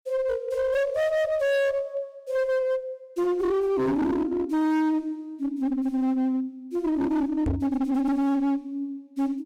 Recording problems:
distorted audio; hard clipping, uneven, signal-to-distortion ratio 7 dB
knock on the microphone; at 7.5 s; peak +3 dB vs average level

